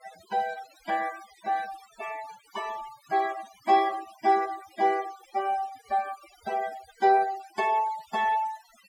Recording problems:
noise reduction artefacts; signal-to-artefact ratio 18 dB

